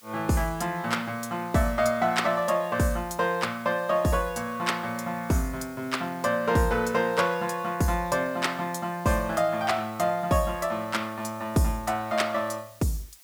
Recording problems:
background hiss; slope +2 dB per octave, SNR 23 dB

